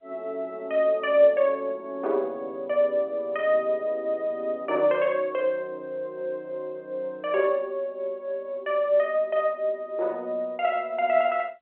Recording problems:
telephone audio; 300 Hz to 3.3 kHz, G.711

